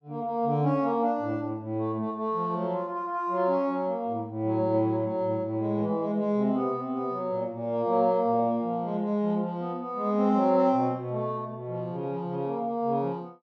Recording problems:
none

